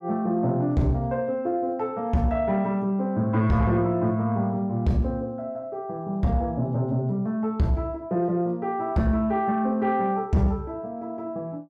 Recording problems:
distortion; soft clipping, signal-to-distortion ratio 12 dB

